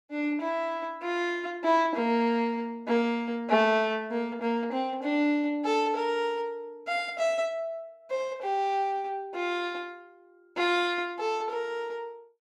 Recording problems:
none

